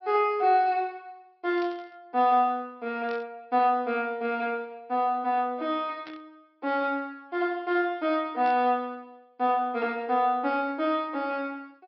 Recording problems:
low-pass filter; nothing above 5.6 kHz
burst of static; 4 times, first at 1.5 s; peak -14 dB vs average level

